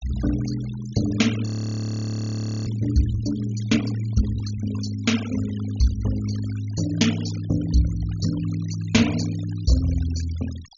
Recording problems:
low-pass filter; nothing above 7.1 kHz
denoising artefacts; signal-to-artefact ratio 15 dB
audio freezing; at 1.5 s for 1 s

